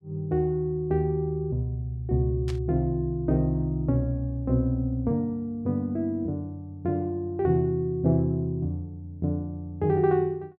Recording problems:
static burst; at 2.5 s; peak -11 dB vs average level

